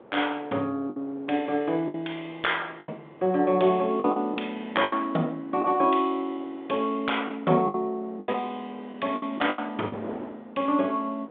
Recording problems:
telephone audio; 190 Hz to 3.6 kHz, G.726
wind noise; below 720 Hz, SNR 19 dB
packet loss; 7% of the sound replaced, filled with the last packet

